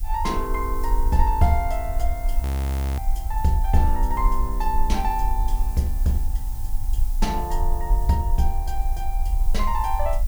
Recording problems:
background hiss; SNR 17 dB
rumble; below 48 Hz, SNR 1 dB
audio freezing; at 2.5 s for 0.5 s

